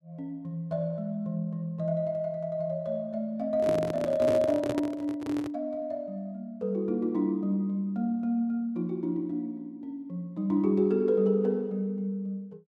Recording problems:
handling noise; from 3.5 to 5.5 s; peak +1 dB vs average level

